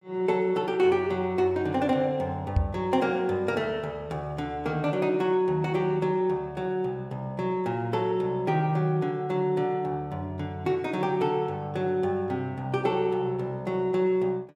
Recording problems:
microphone bump; at 2.5 s; peak +6 dB vs average level

